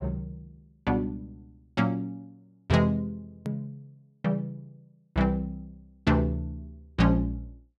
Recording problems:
click at an edit; at 3.5 s

